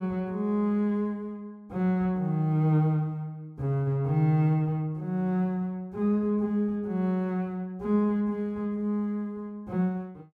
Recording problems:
none

